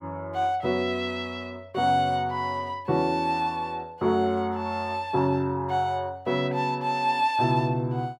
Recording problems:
none

